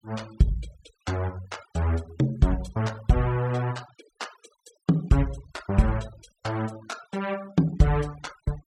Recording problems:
denoising artefacts; signal-to-artefact ratio 21 dB

